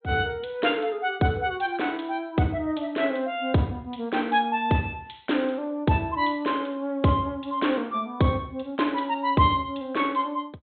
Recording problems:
low-pass filter; nothing above 4 kHz

